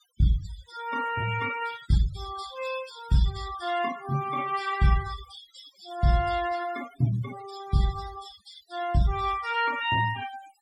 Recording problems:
denoising artefacts; signal-to-artefact ratio 13 dB

